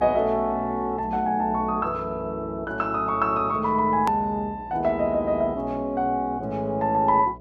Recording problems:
electrical hum; 60 Hz, harmonics up to 660 Hz, SNR 20 dB
hard cut with a click; at 4 s

